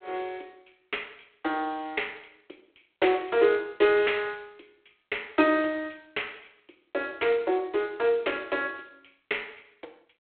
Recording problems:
phone line; 280 Hz to 3.5 kHz, G.726

